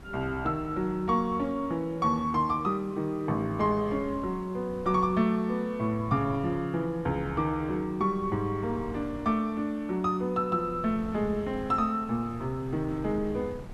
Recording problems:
background hiss; slope -5 dB per octave, SNR 26 dB
wind noise; below 250 Hz, SNR 17 dB

